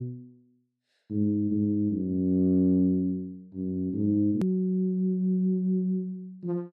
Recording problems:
hard cut with a click; at 4.5 s

